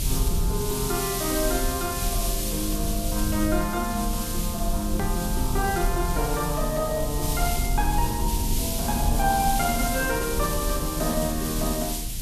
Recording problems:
hiss; SNR 3 dB
rumble; below 72 Hz, strongest tone 38 Hz, SNR 3 dB
hard cut with a click; at 5 s

